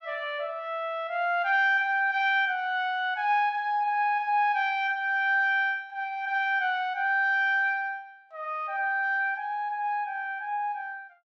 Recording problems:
none

